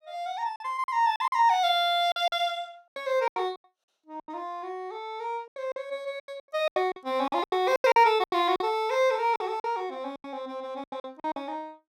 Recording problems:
packet loss; 14% of the sound replaced, filled with silence

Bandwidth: 17 kHz